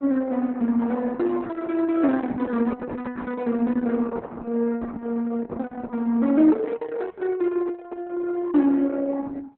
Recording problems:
lossy compression; MP2, then Opus, log-spectral distance 3 dB, nothing above 4 kHz

